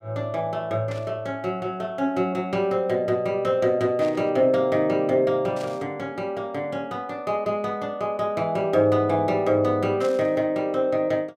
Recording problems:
static burst; 4 times, first at 1 s; peak -12 dB vs average level

